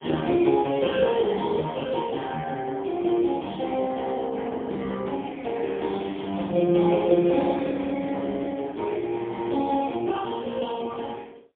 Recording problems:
phone line; 220 Hz to 3.1 kHz, AMR-NB, then MP3

